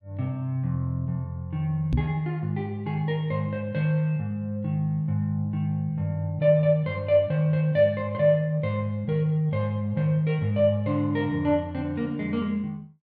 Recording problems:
microphone bump; at 2 s; peak +5 dB vs average level

